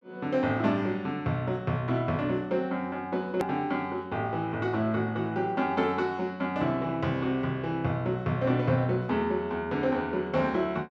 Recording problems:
edit click; at 3.5 s

